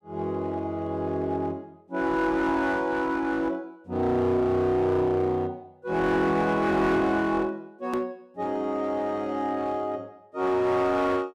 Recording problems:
distortion; hard clipping, uneven, signal-to-distortion ratio 11 dB
edit click; at 8 s

